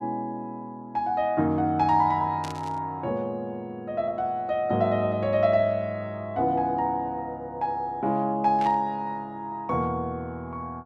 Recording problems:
static burst; at 2.5 s and at 8.5 s; peak -9 dB vs average level

